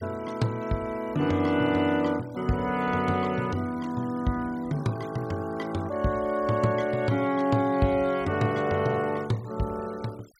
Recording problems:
noise reduction artefacts; signal-to-artefact ratio 23 dB

